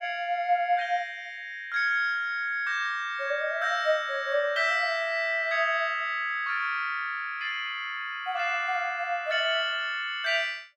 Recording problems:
none

